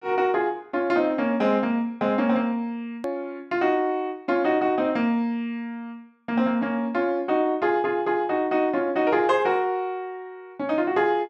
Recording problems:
edit click; at 3 s

